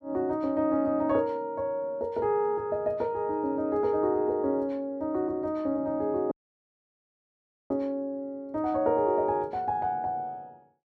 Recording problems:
dropout; at 6.5 s for 1.5 s

